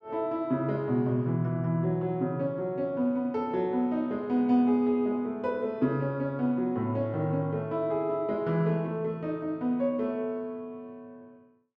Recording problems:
none

